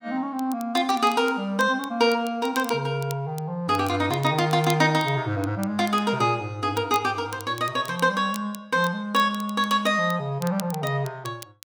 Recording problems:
crackle; vinyl, SNR 19 dB

